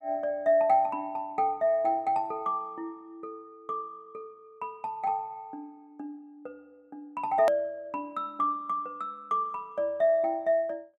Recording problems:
click at an edit; at 7.5 s

